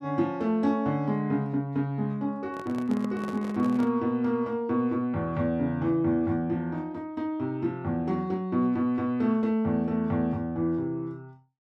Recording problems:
handling noise; from 2.5 to 4 s; peak -7 dB vs average level

